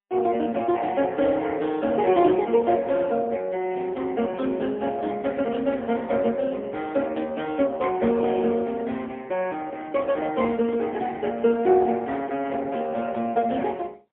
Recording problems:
phone line; 240 Hz to 3.4 kHz, AMR-NB, then MP3
microphone handling noise; from 9.5 to 13 s; peak -10 dB vs average level

